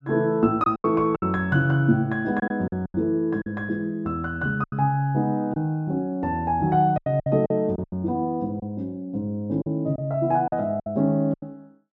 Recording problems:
lost packets; 9% of the sound replaced, filled with silence

